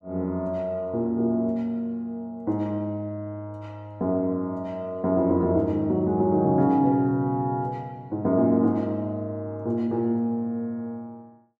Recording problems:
none

